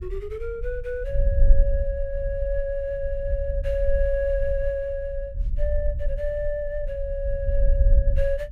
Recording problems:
low-frequency rumble; below 52 Hz, SNR -1 dB

